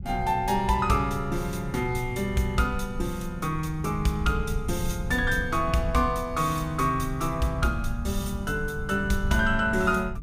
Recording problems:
rumble; below 100 Hz, SNR 9 dB

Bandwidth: 15.5 kHz